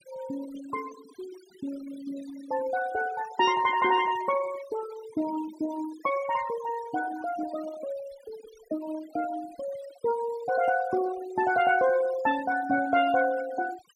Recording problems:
denoising artefacts; signal-to-artefact ratio 16 dB

